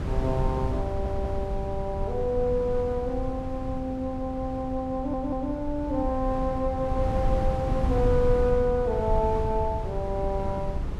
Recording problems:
wind on the microphone; below 120 Hz, SNR 4 dB
audio stuttering; at 1 s and at 5 s

